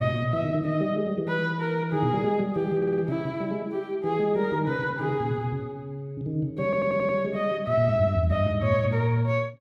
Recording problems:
audio stuttering; at 3 s and at 6.5 s

